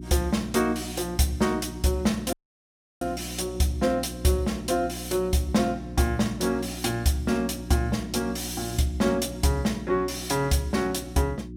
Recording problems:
hum; 60 Hz, harmonics up to 360 Hz, SNR 12 dB
audio cutting out; at 2.5 s for 0.5 s

